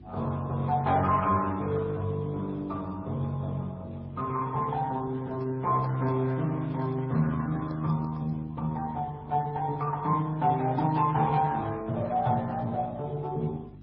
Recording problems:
lossy codec; Speex, then MP3, log-spectral distance 2 dB, nothing above 4.9 kHz
electrical hum; 50 Hz, harmonics up to 350 Hz, SNR 20 dB
microphone handling noise; from 5 to 8.5 s; peak -13 dB vs average level

